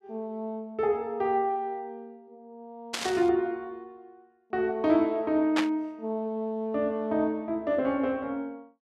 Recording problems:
burst of static; at 3 s and at 5.5 s; peak +3 dB vs average level

